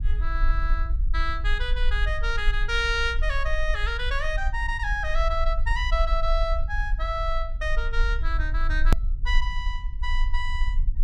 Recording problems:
low-frequency rumble; below 46 Hz, strongest tone 22 Hz, SNR 0 dB
hard cut with a click; at 9 s

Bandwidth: 14.5 kHz